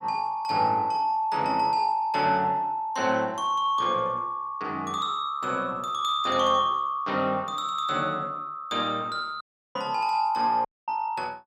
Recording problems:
dropout; at 9.5 s and at 11 s

